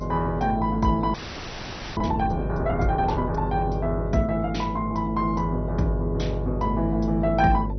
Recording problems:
lossy compression; MP2, log-spectral distance 4 dB, nothing above 6 kHz
hum; 50 Hz, harmonics up to 600 Hz, SNR 6 dB
audio freezing; at 1 s for 1 s

